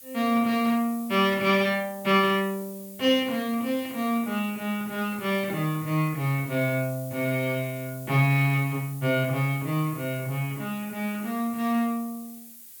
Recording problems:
hiss; SNR 16 dB

